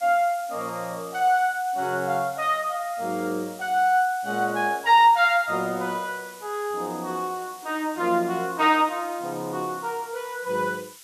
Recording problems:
hiss; slope +3 dB per octave, SNR 20 dB

